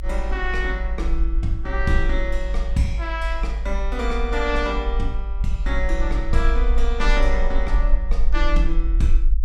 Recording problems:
rumble; below 50 Hz, SNR -2 dB

